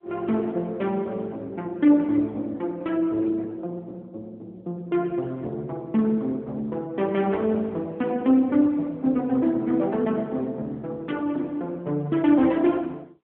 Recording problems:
telephone audio; 170 Hz to 3.5 kHz, AMR-NB

